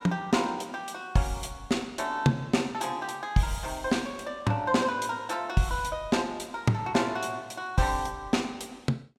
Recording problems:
none

